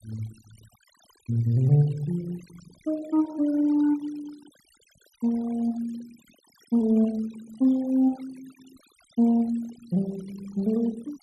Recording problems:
noise reduction artefacts; signal-to-artefact ratio 24 dB

